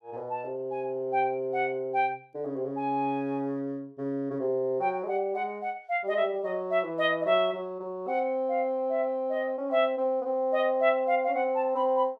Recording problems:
none

